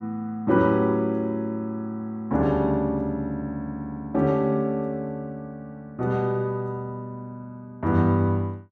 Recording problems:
none

